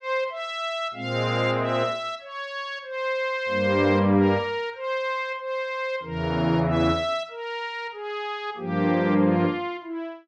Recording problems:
none

